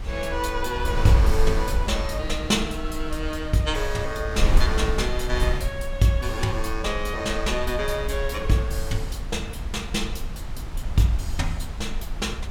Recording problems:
wind noise; below 64 Hz, SNR 3 dB

